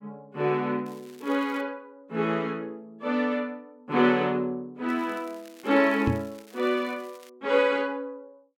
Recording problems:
crackle; at 1 s and from 5 to 7.5 s; loose cable, SNR 26 dB
knock on the microphone; at 6 s; peak +5 dB vs average level

